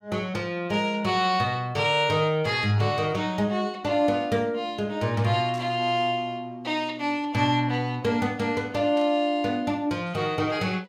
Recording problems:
static burst; at 5.5 s and at 9 s; peak -15 dB vs average level

